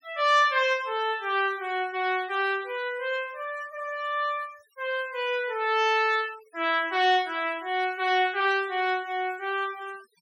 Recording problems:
denoising artefacts; signal-to-artefact ratio 22 dB

